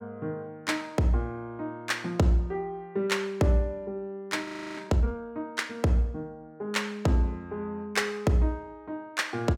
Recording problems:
frozen audio; at 4.5 s

